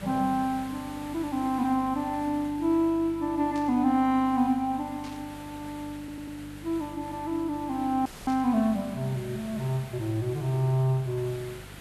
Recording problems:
electrical hum; 50 Hz, harmonics up to 550 Hz, SNR 20 dB
hiss; SNR 19 dB
static burst; at 3.5 s, at 5 s and at 8.5 s; peak -14 dB vs average level
stutter; at 6 s
dropout; at 8 s

